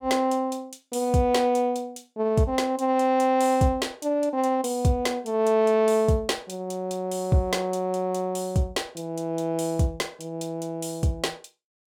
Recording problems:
none

